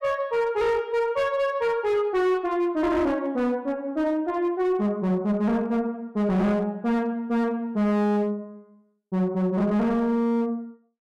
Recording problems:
distorted audio; hard clipping, signal-to-distortion ratio 10 dB

